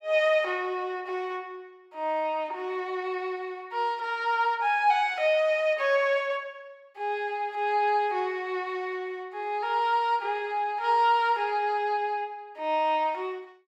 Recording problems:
none

